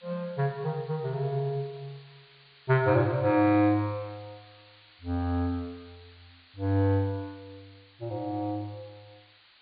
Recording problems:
treble missing; nothing above 4.6 kHz
hiss; SNR 27 dB

